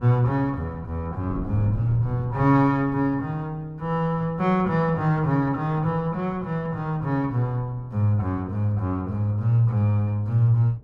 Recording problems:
wind on the microphone; below 190 Hz, SNR 18 dB

